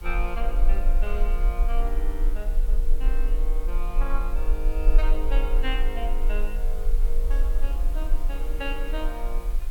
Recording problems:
hiss; slope -4 dB per octave, SNR 14 dB
low-frequency rumble; below 36 Hz, strongest tone 22 Hz, SNR -8 dB

